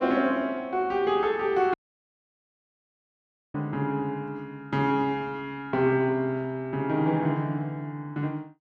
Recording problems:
dropout; at 1.5 s for 2 s

